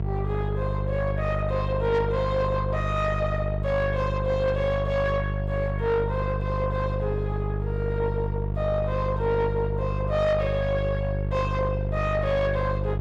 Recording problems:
distortion; soft clipping, signal-to-distortion ratio 11 dB
hum; 50 Hz, harmonics up to 700 Hz, SNR 2 dB

